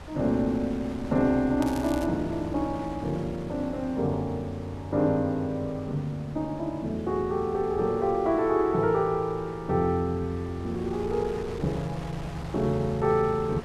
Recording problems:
wind on the microphone; below 770 Hz, SNR 15 dB
crackle; at 1.5 s; loose cable, SNR 17 dB

